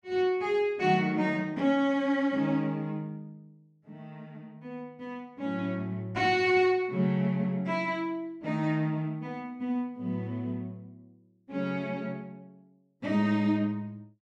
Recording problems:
none

